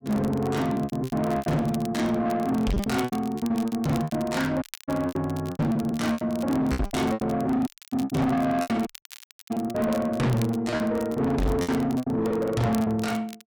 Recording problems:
distortion; soft clipping, signal-to-distortion ratio 7 dB
crackling; vinyl, SNR 19 dB
packet loss; 14% of the sound replaced, filled with repeated pitch periods
audio cutting out; at 4.5 s, at 7.5 s and at 9 s for 0.5 s

